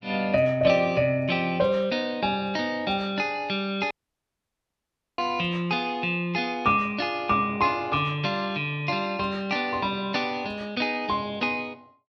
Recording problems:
audio cutting out; at 4 s for 1.5 s

